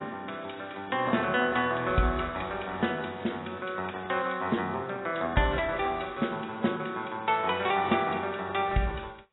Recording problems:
lossy compression; AAC, log-spectral distance 5 dB, nothing above 3.8 kHz

